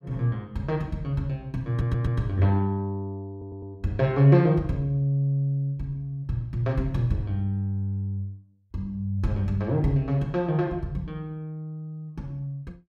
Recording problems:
stutter; at 1.5 s and at 3.5 s

